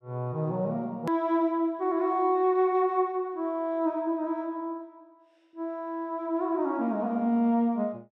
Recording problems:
hard cut with a click; at 1 s

